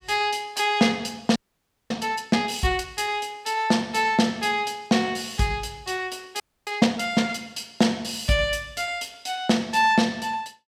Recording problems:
audio freezing; at 1.5 s for 0.5 s and at 6.5 s

